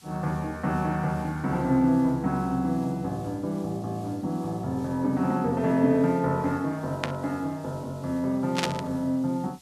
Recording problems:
background hiss; slope +1 dB per octave, SNR 26 dB
burst of static; at 7 s and at 8.5 s; peak +4 dB vs average level

